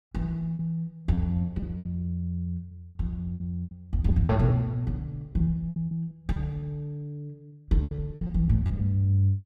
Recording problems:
lost packets; 13% of the sound replaced, filled with repeated pitch periods

